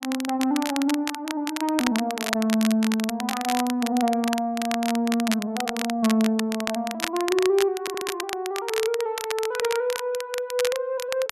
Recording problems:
crackle; vinyl, SNR 7 dB
stutter; at 8 s

